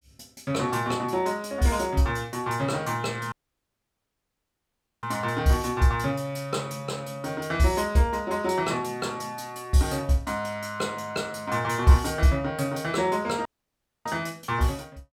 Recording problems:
dropout; at 3.5 s for 1.5 s and at 13 s for 0.5 s

